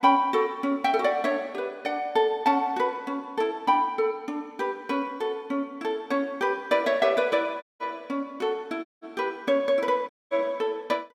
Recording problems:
dropout; at 7.5 s, at 9 s and at 10 s

